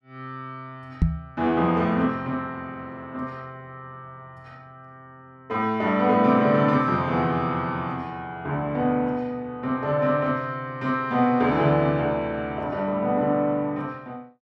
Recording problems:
microphone bump; at 1 s; peak +6 dB vs average level

